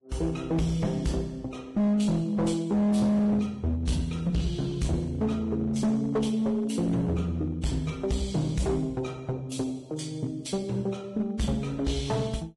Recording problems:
lossy codec; Vorbis, log-spectral distance 2 dB, nothing above 11 kHz
distortion; hard clipping, uneven, signal-to-distortion ratio 10 dB

